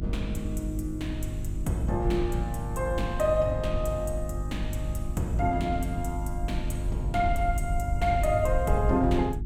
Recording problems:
hum; 50 Hz, harmonics up to 350 Hz, SNR 6 dB
low-frequency rumble; below 80 Hz, SNR 6 dB

